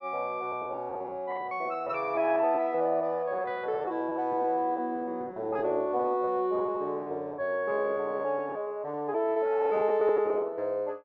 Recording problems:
lost packets; 17% of the sound replaced, filled with repeated pitch periods

